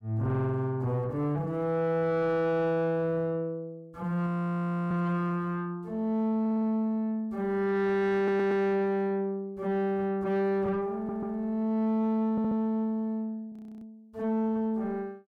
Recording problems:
distorted audio; soft clipping, signal-to-distortion ratio 7 dB
audio freezing; at 4.5 s for 0.5 s and at 14 s
audio stuttering; 4 times, first at 6.5 s

